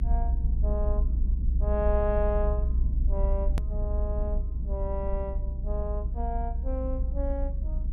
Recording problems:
rumble; below 60 Hz, strongest tone 32 Hz, SNR -5 dB
click at an edit; at 3.5 s

